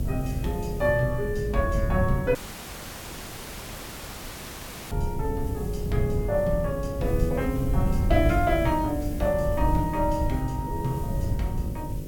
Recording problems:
electrical hum; 50 Hz, harmonics up to 600 Hz, SNR 9 dB
hiss; SNR 20 dB
wind noise; below 120 Hz, SNR 3 dB
dropout; at 2.5 s for 2.5 s

